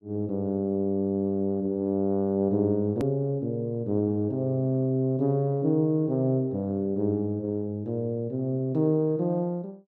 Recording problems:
hard cut with a click; at 3 s

